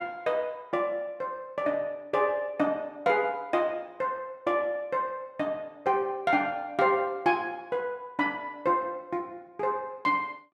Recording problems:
none

